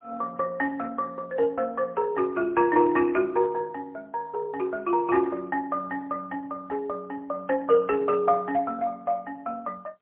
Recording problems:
telephone audio; 300 Hz to 2.5 kHz, AMR-NB, then MP3

